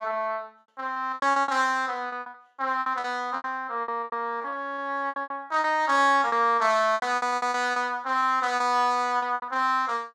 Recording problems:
lost packets; 15% of the sound replaced, filled with repeated pitch periods

